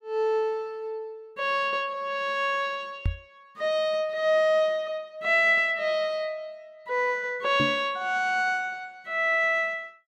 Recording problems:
microphone thump; at 3 s and at 7.5 s; peak +2 dB vs average level

